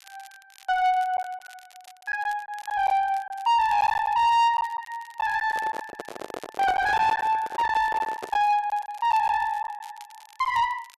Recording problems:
distortion; soft clipping, signal-to-distortion ratio 11 dB
crackling; vinyl, SNR 27 dB
lost packets; 7% of the sound replaced, filled with silence
handling noise; from 5.5 to 8.5 s; peak -6 dB vs average level

